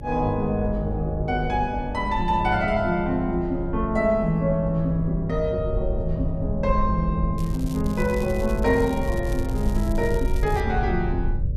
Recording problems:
mains hum; 50 Hz, harmonics up to 600 Hz, SNR 9 dB
low-frequency rumble; below 80 Hz, SNR 7 dB
crackle; from 7.5 to 11 s; loose cable, SNR 20 dB

